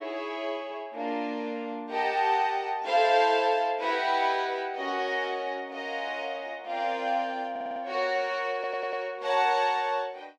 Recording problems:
audio stuttering; at 7.5 s and at 8.5 s

